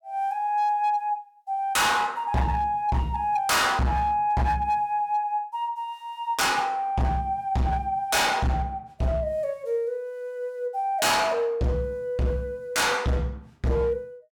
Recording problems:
distorted audio; hard clipping, signal-to-distortion ratio 6 dB

